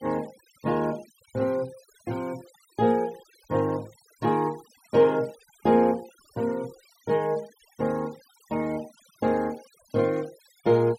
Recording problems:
noise reduction artefacts; signal-to-artefact ratio 24 dB

